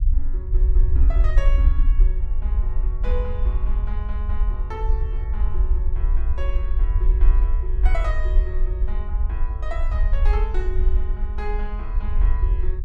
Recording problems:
rumble; below 52 Hz, SNR -13 dB

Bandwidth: 14.5 kHz